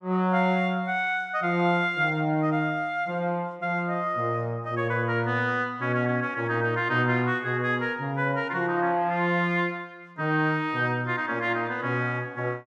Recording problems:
none

